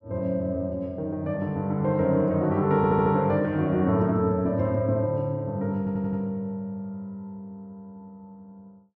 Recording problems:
stutter; at 3 s and at 6 s

